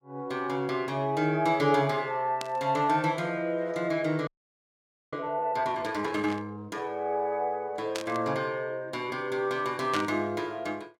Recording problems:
static burst; 4 times, first at 2.5 s; peak 0 dB vs average level
frozen audio; at 4.5 s for 1 s

